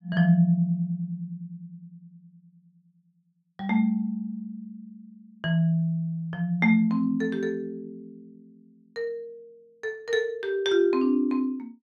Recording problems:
none

